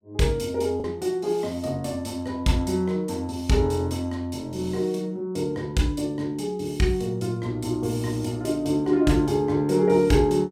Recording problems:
lost packets; 0.4% of the sound replaced, filled with the last packet

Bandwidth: 16 kHz